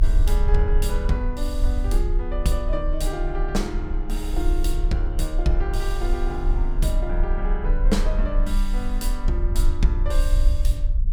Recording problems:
low-frequency rumble; below 44 Hz, strongest tone 28 Hz, SNR -3 dB

